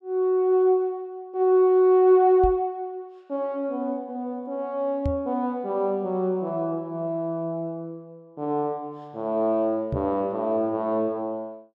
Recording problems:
microphone bump; at 2.5 s, at 5 s and at 10 s; peak 0 dB vs average level

